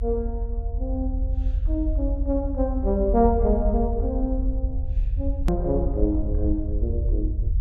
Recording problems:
rumble; below 70 Hz, strongest tone 40 Hz, SNR 0 dB
click at an edit; at 5.5 s

